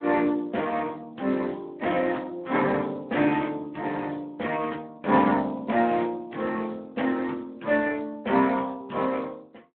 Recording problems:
telephone audio; 220 Hz to 3.3 kHz, Speex

